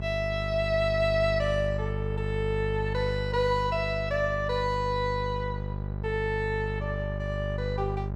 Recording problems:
hum; 50 Hz, harmonics up to 1 kHz, SNR 4 dB

